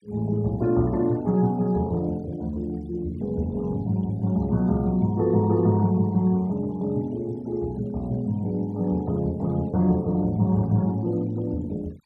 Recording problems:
noise reduction artefacts; signal-to-artefact ratio 28 dB

